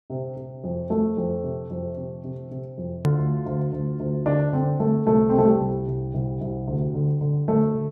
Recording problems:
hard cut with a click; at 3 s

